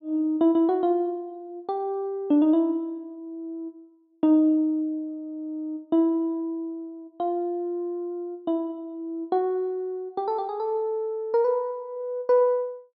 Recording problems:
none

